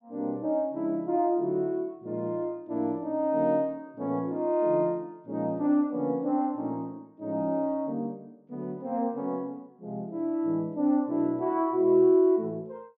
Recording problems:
none

